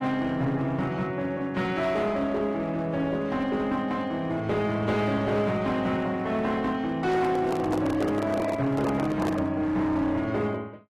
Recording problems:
lossy compression; AAC, log-spectral distance 2 dB, nothing above 13.1 kHz
distorted audio; hard clipping, uneven, signal-to-distortion ratio 11 dB
microphone handling noise; from 7 to 9.5 s; peak 0 dB vs average level

